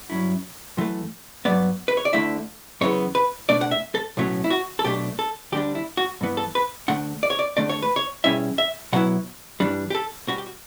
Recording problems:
background hiss; slope -1 dB per octave, SNR 17 dB

